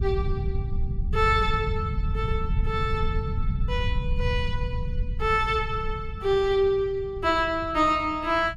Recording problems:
low-frequency rumble; below 100 Hz, SNR 5 dB

